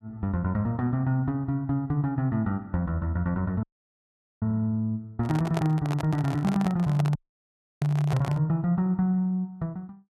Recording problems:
dropout; at 3.5 s for 1 s and at 7 s for 0.5 s
handling noise; from 5 to 8.5 s; peak -1 dB vs average level

